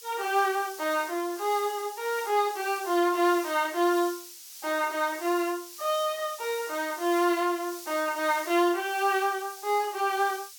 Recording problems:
background hiss; SNR 14 dB

